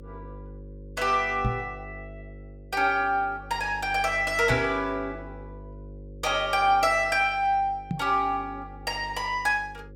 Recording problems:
electrical hum; 50 Hz, harmonics up to 550 Hz, SNR 19 dB
microphone thump; at 1.5 s, at 4.5 s and at 8 s; peak +1 dB vs average level

